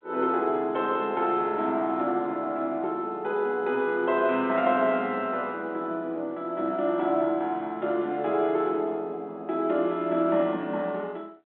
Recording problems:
phone line; 220 Hz to 3.7 kHz, G.726

